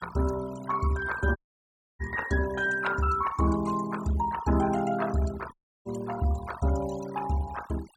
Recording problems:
denoising artefacts; signal-to-artefact ratio 14 dB
audio cutting out; at 1.5 s for 0.5 s and at 5.5 s

